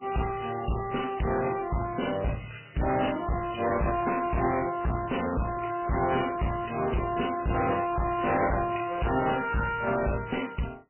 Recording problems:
codec artefacts; AAC, then MP3, log-spectral distance 7 dB, nothing above 3 kHz
distortion; hard clipping, uneven, signal-to-distortion ratio 5 dB

